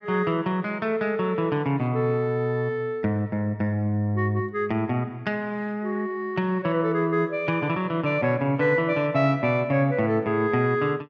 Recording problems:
none

